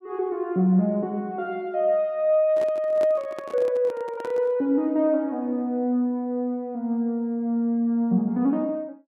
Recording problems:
handling noise; from 2.5 to 4.5 s; peak -8 dB vs average level

